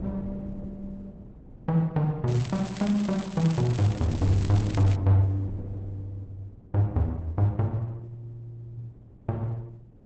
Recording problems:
lossy compression; Opus, log-spectral distance 2 dB
wind on the microphone; below 260 Hz, SNR 15 dB
crackling; from 2.5 to 5 s; loose cable, SNR 18 dB

